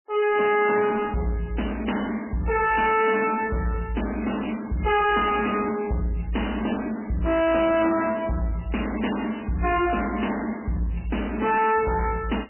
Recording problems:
lossy compression; MP3, log-spectral distance 8 dB, nothing above 2.9 kHz
distortion; soft clipping, signal-to-distortion ratio 5 dB

